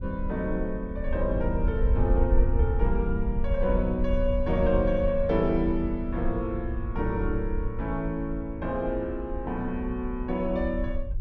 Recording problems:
rumble; below 68 Hz, SNR 3 dB

